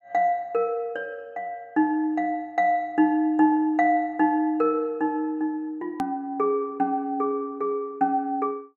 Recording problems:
edit click; at 6 s

